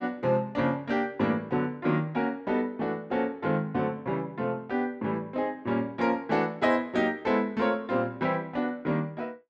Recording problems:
none

